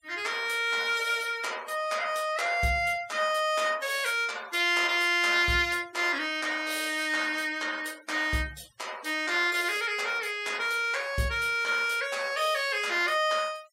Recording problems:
noise reduction artefacts; signal-to-artefact ratio 22 dB

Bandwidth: 16 kHz